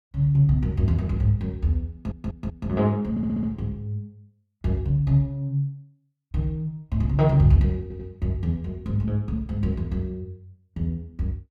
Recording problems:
stutter; at 2 s, at 3 s and at 8 s

